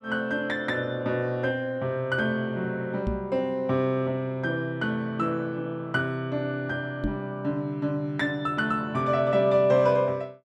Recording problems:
microphone thump; at 3 s and at 7 s; peak +2 dB vs average level

